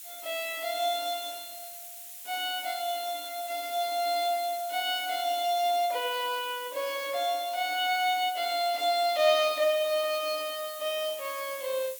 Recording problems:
background hiss; SNR 12 dB

